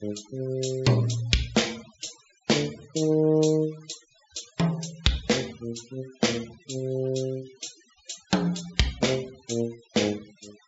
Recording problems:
treble cut off; nothing above 8 kHz
noise reduction artefacts; signal-to-artefact ratio 20 dB

